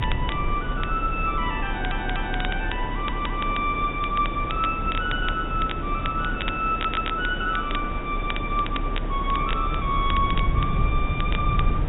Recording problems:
low-pass filter; nothing above 4 kHz
background hiss; SNR 7 dB
low-frequency rumble; below 74 Hz, strongest tone 32 Hz, SNR 4 dB
crackle; vinyl, SNR 10 dB
stutter; at 1.5 s, at 3 s and at 6.5 s

